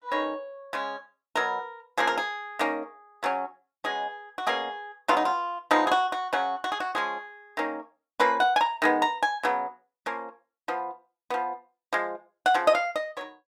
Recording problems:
none

